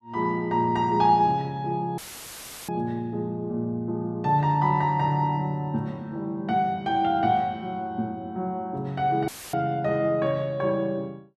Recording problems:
audio cutting out; at 2 s for 0.5 s and at 9.5 s; filled with static

